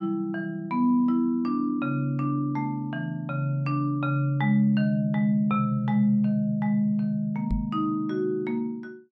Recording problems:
microphone bump; at 7.5 s; peak -1 dB vs average level

